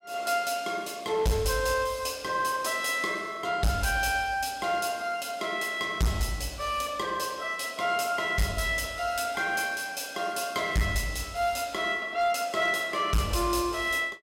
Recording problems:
distorted audio; hard clipping, uneven, signal-to-distortion ratio 11 dB

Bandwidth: 16 kHz